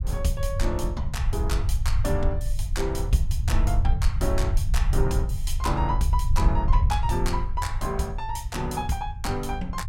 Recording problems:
rumble; below 72 Hz, SNR -2 dB

